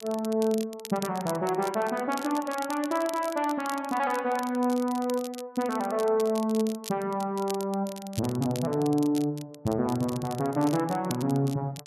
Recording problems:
crackling; vinyl, SNR 15 dB

